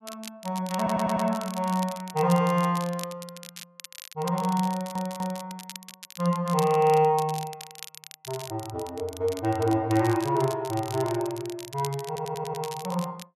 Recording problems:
crackle; vinyl, SNR 15 dB
stutter; at 1 s, at 4.5 s and at 12 s

